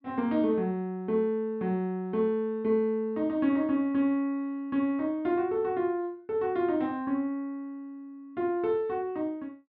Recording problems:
treble missing; nothing above 5.5 kHz

